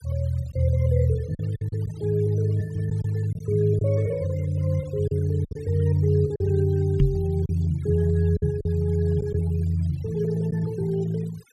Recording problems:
noise reduction artefacts; signal-to-artefact ratio 25 dB
lost packets; 5% of the sound replaced, filled with silence
knock on the microphone; at 7 s; peak +7 dB vs average level

